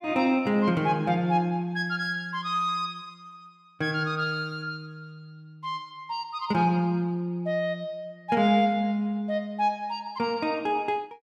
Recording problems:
none

